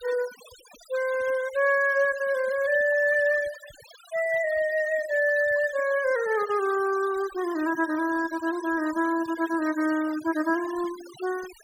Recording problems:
denoising artefacts; signal-to-artefact ratio 19 dB

